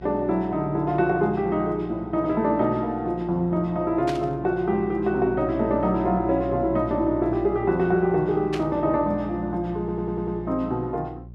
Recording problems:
electrical hum; 60 Hz, harmonics up to 420 Hz, SNR 16 dB
static burst; at 4 s and at 8.5 s; peak -5 dB vs average level
stutter; at 10 s

